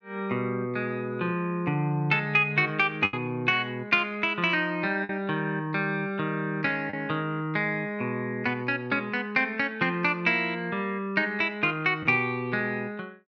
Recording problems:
packet loss; 1.4% of the sound replaced, filled with the last packet

